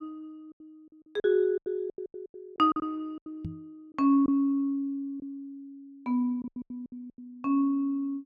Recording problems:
lost packets; 13% of the sound replaced, filled with silence
microphone bump; at 3.5 s; peak -4 dB vs average level

